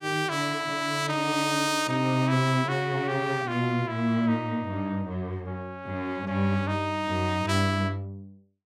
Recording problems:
none

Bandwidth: 17 kHz